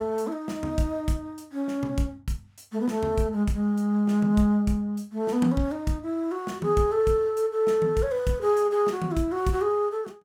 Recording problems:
none

